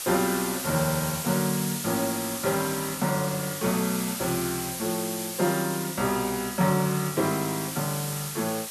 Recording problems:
background hiss; slope +2 dB per octave, SNR 5 dB

